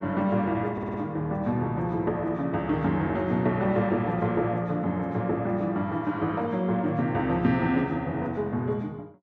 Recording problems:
audio stuttering; at 0.5 s

